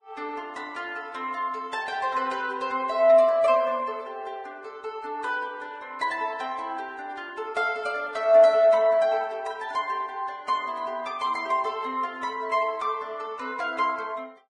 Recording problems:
codec artefacts; Vorbis, log-spectral distance 2 dB

